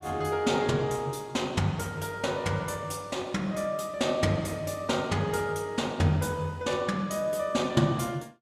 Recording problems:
none

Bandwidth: 14.5 kHz